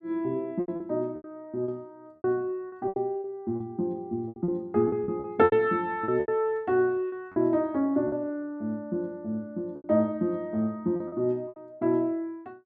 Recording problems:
lost packets; 11% of the sound replaced, filled with repeated pitch periods

